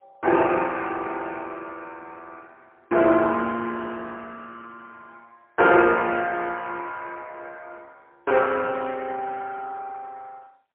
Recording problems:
telephone audio; 280 Hz to 3.2 kHz, AMR-NB, then MP3

